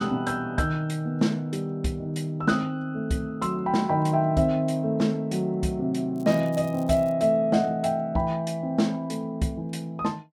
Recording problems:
crackling; at 6 s; loose cable, SNR 25 dB

